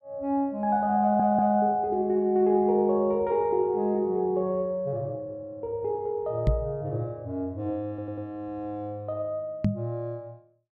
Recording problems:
audio stuttering; at 1 s and at 8 s
microphone thump; at 6.5 s and at 9.5 s; peak +6 dB vs average level

